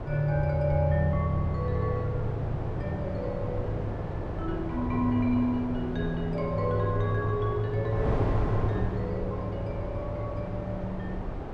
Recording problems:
wind noise; below 500 Hz, SNR 5 dB

